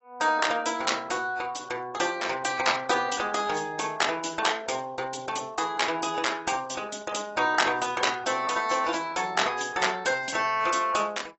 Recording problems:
lossy compression; AAC, log-spectral distance 5 dB, nothing above 7.8 kHz

